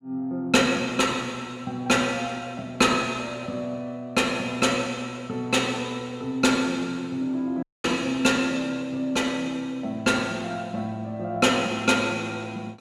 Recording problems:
audio cutting out; at 7.5 s

